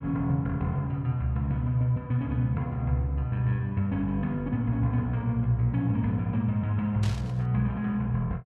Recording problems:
burst of static; at 7 s; peak -9 dB vs average level

